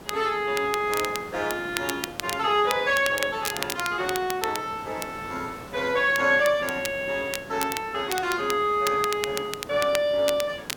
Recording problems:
hiss; slope -6 dB per octave, SNR 17 dB
crackling; vinyl, SNR 9 dB

